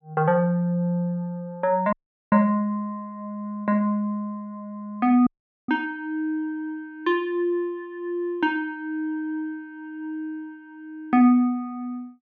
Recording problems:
audio cutting out; at 2 s and at 5.5 s

